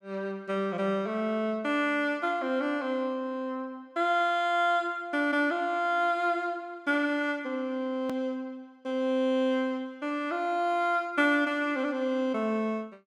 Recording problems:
edit click; at 8 s

